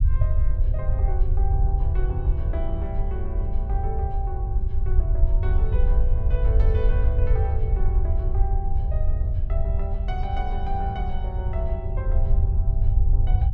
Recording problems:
low-frequency rumble; below 70 Hz, SNR -10 dB

